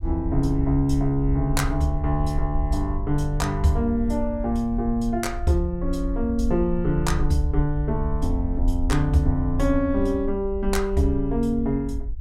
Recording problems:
rumble; below 60 Hz, SNR 6 dB

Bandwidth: 16 kHz